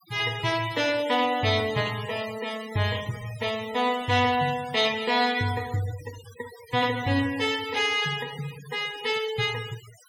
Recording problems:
noise reduction artefacts; signal-to-artefact ratio 16 dB

